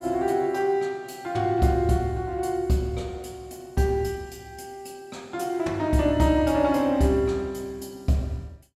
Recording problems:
none

